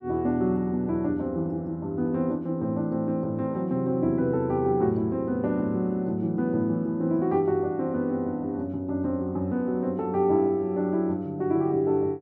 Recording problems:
none

